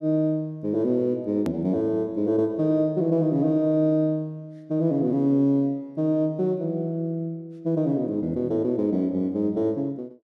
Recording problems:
click at an edit; at 1.5 s

